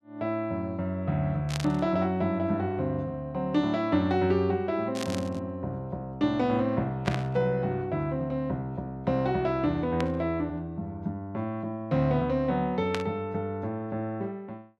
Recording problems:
static burst; 5 times, first at 1.5 s; peak 0 dB vs average level

